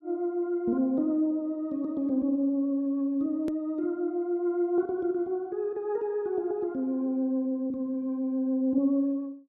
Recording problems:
hard cut with a click; at 3.5 s

